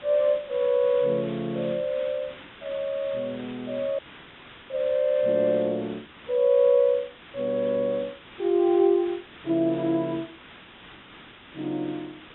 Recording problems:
treble missing; nothing above 3.7 kHz
background hiss; SNR 20 dB
dropout; at 4 s for 0.5 s and at 10 s for 1 s

